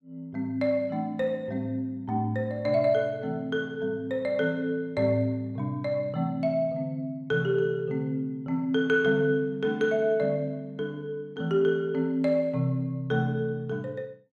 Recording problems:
none

